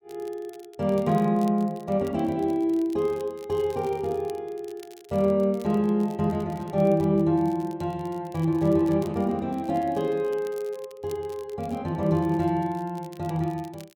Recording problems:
crackle; vinyl, SNR 27 dB

